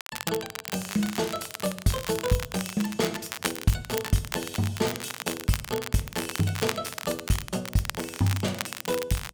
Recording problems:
crackling; vinyl, SNR 6 dB

